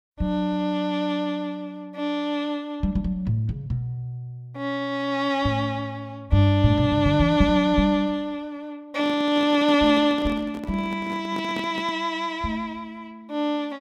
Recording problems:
handling noise; from 9 to 12 s; peak -6 dB vs average level

